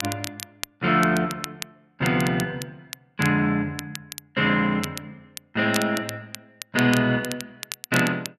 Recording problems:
crackling; vinyl, SNR 13 dB

